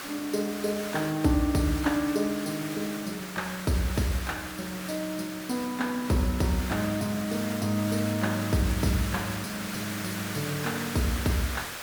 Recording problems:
background hiss; SNR 7 dB

